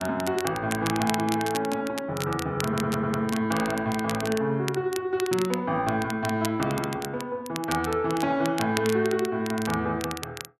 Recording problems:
crackling; vinyl, SNR 10 dB
audio stuttering; at 2.5 s

